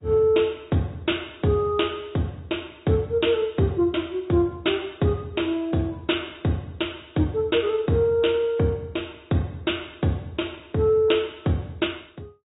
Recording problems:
treble missing; nothing above 3.8 kHz
lossy compression; AAC, log-spectral distance 3 dB

